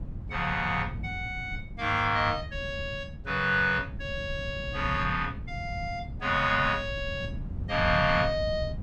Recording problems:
wind on the microphone; below 150 Hz, SNR 10 dB

